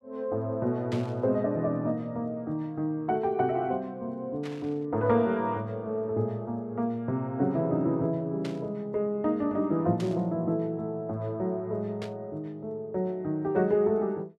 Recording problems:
burst of static; 5 times, first at 1 s; peak -8 dB vs average level

